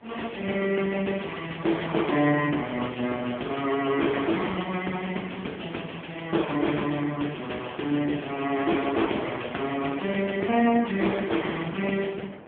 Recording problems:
phone line; 190 Hz to 3.3 kHz, AMR-NB
wind noise; below 830 Hz, SNR 21 dB

